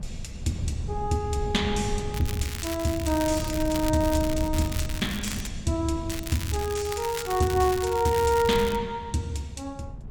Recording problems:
wind on the microphone; below 130 Hz, SNR 10 dB
crackle; from 2 to 5.5 s and from 6 to 9 s; loose cable, SNR 10 dB

